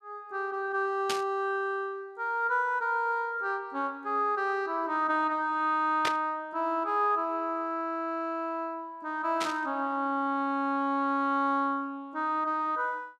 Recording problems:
static burst; at 1 s, at 6 s and at 9.5 s; peak +2 dB vs average level

